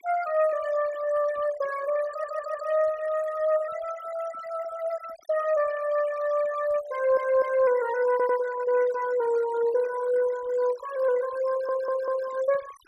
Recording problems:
noise reduction artefacts; signal-to-artefact ratio 17 dB
stutter; 4 times, first at 2 s

